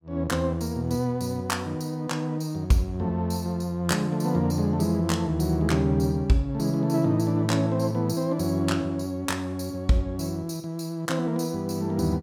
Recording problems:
none

